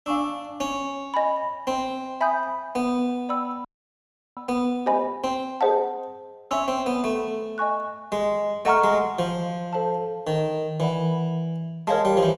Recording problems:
frozen audio; at 3.5 s for 0.5 s

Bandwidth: 15 kHz